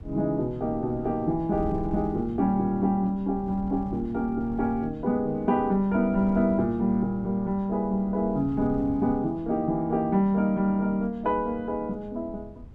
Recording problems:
wind noise; below 130 Hz, SNR 17 dB

